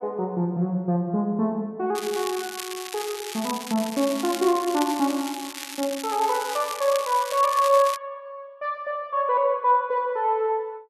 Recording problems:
crackling; from 2 to 8 s; loose cable, SNR 10 dB

